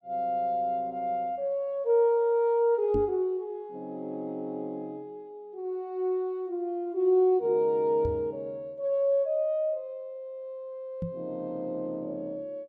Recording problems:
microphone thump; at 3 s, at 8 s and at 11 s; peak -1 dB vs average level

